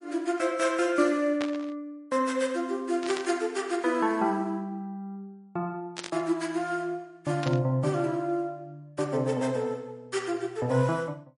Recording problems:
lossy codec; MP3, log-spectral distance 2 dB, nothing above 10.4 kHz
static burst; 4 times, first at 1.5 s; peak -2 dB vs average level

